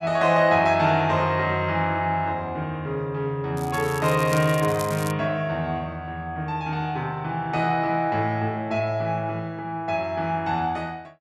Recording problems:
crackle; from 3.5 to 5 s; loose cable, SNR 14 dB

